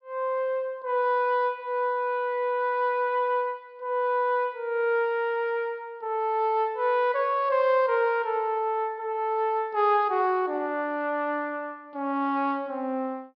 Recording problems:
treble missing; nothing above 5.5 kHz

